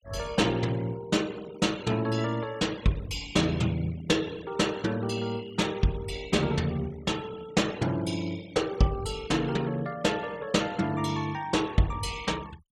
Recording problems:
denoising artefacts; signal-to-artefact ratio 20 dB

